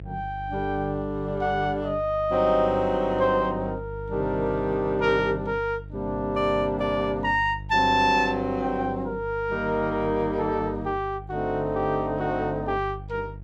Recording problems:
electrical hum; 50 Hz, harmonics up to 500 Hz, SNR 14 dB

